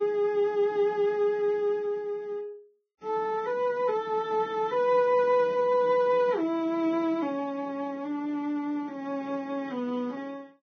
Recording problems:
codec artefacts; Vorbis, log-spectral distance 2 dB, nothing above 5.3 kHz

